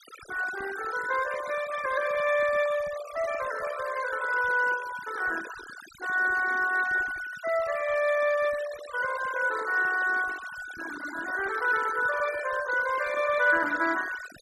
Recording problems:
denoising artefacts; signal-to-artefact ratio 13 dB

